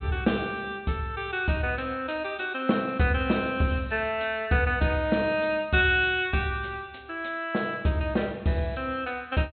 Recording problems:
low-pass filter; nothing above 4.2 kHz

